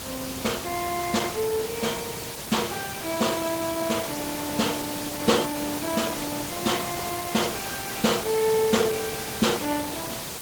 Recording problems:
lossy codec; Opus, log-spectral distance 9 dB
background hiss; slope -2 dB per octave, SNR 5 dB

